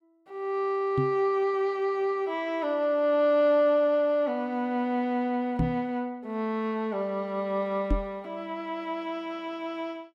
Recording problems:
microphone thump; at 1 s, at 5.5 s and at 8 s; peak +4 dB vs average level

